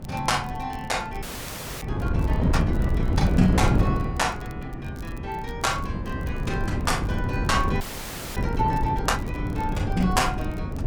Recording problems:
wind noise; below 220 Hz, SNR 0 dB
crackle; vinyl, SNR 25 dB
audio freezing; at 1 s for 0.5 s and at 8 s for 0.5 s

